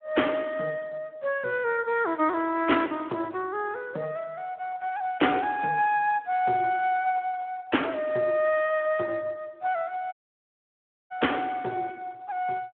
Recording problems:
phone line; 220 Hz to 3.4 kHz, Speex
dropout; at 10 s for 1 s

